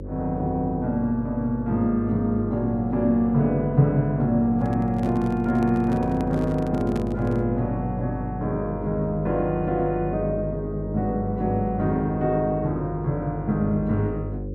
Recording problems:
hum; 50 Hz, harmonics up to 550 Hz, SNR 10 dB
handling noise; from 4.5 to 7.5 s; peak -4 dB vs average level

